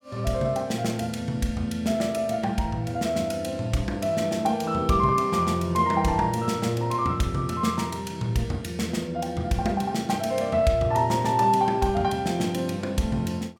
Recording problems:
none

